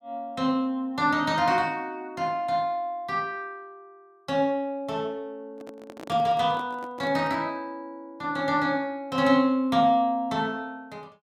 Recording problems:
microphone handling noise; from 5.5 to 7.5 s; peak -10 dB vs average level

